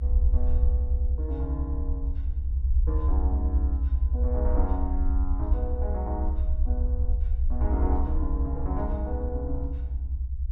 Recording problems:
rumble; below 70 Hz, SNR -8 dB

